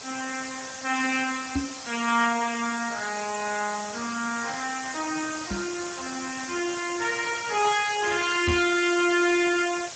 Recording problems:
lossy codec; Vorbis, then Speex, log-spectral distance 18 dB, nothing above 7.8 kHz
background hiss; slope 0 dB per octave, SNR 10 dB
knock on the microphone; at 1.5 s, at 5.5 s and at 8.5 s; peak +3 dB vs average level

